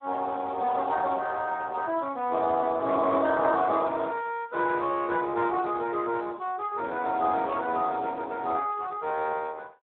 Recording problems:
telephone audio; 220 Hz to 3.7 kHz, Speex

